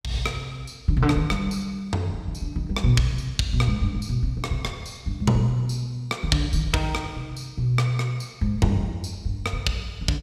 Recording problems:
none

